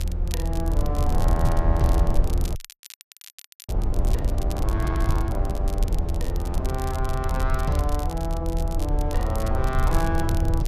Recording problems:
low-frequency rumble; below 78 Hz, SNR -4 dB
crackle; vinyl, SNR 12 dB
frozen audio; at 2.5 s for 1 s

